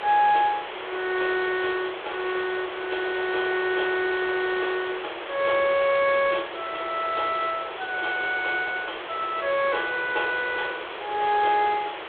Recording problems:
phone line; 300 Hz to 3.7 kHz, G.726
hiss; SNR 9 dB

